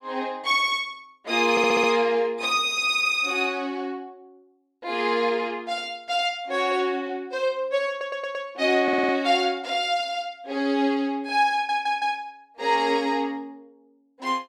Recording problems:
stutter; 4 times, first at 1.5 s

